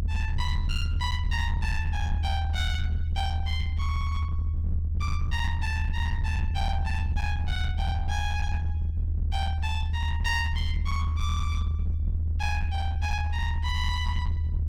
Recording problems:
distortion; hard clipping, signal-to-distortion ratio 12 dB
rumble; below 80 Hz, strongest tone 78 Hz, SNR -5 dB

